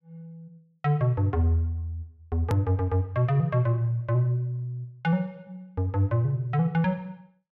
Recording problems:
click at an edit; at 2.5 s

